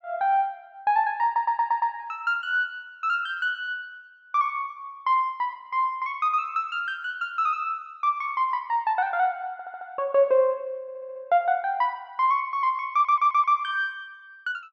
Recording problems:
stutter; 4 times, first at 1 s

